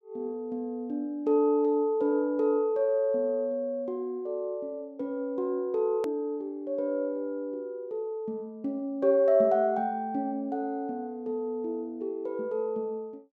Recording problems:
hard cut with a click; at 6 s

